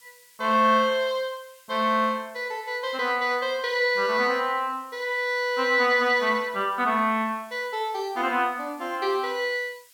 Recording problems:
hiss; slope +4 dB per octave, SNR 28 dB

